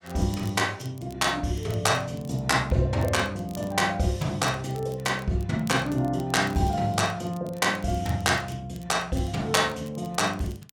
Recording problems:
crackle; vinyl, SNR 25 dB

